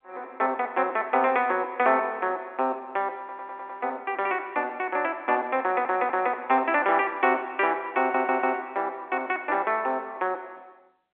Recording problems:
phone line; 260 Hz to 3.5 kHz, G.711
stutter; at 3 s, at 5.5 s and at 8 s

